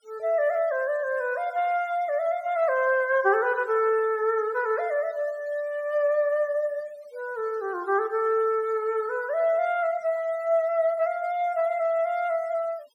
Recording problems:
denoising artefacts; signal-to-artefact ratio 27 dB

